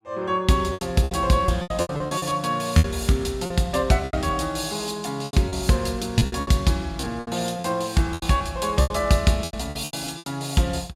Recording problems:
lost packets; 14% of the sound replaced, filled with repeated pitch periods

